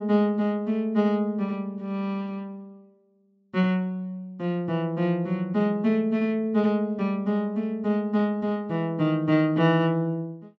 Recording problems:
treble cut off; nothing above 8 kHz

